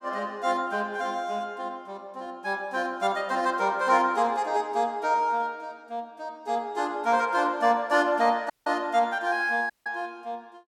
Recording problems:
dropout; at 8.5 s and at 9.5 s

